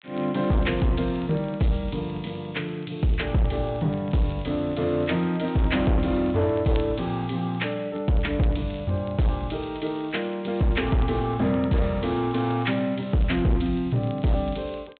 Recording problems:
treble cut off; nothing above 4 kHz
distorted audio; hard clipping, signal-to-distortion ratio 12 dB
crackle; vinyl, SNR 27 dB

